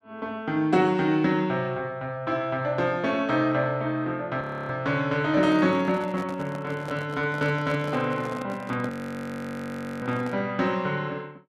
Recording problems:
frozen audio; at 4.5 s and at 9 s for 1 s
handling noise; from 5.5 to 10 s; peak -7 dB vs average level

